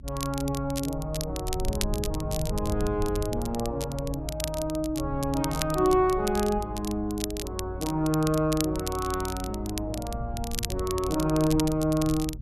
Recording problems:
rumble; below 96 Hz, SNR 9 dB
crackle; vinyl, SNR 9 dB

